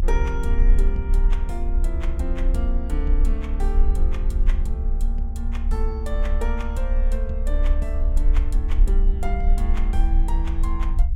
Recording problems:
rumble; below 44 Hz, strongest tone 30 Hz, SNR -9 dB

